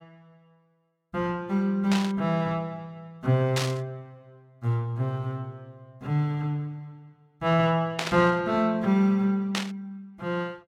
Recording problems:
burst of static; 4 times, first at 2 s; peak +2 dB vs average level

